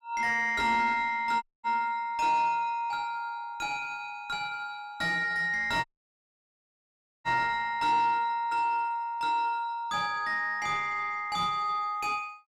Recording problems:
distorted audio; soft clipping, signal-to-distortion ratio 11 dB
dropout; at 1.5 s and at 6 s for 1.5 s

